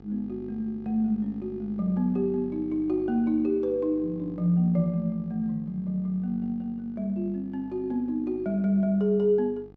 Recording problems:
hum; 50 Hz, harmonics up to 1.3 kHz, SNR 20 dB

